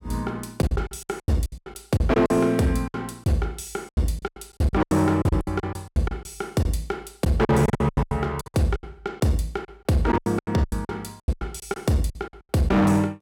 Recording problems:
distortion; hard clipping, signal-to-distortion ratio 11 dB
lost packets; 19% of the sound replaced, filled with silence

